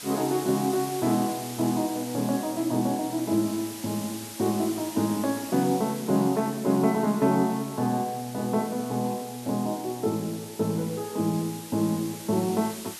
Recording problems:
background hiss; slope +1 dB per octave, SNR 13 dB

